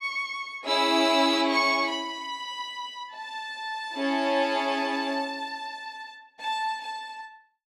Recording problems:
none

